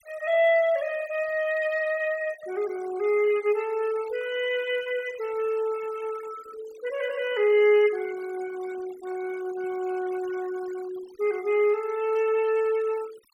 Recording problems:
noise reduction artefacts; signal-to-artefact ratio 20 dB

